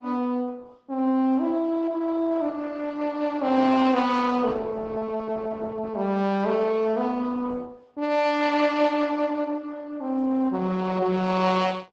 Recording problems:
codec artefacts; Opus, log-spectral distance 3 dB, nothing above 7.6 kHz

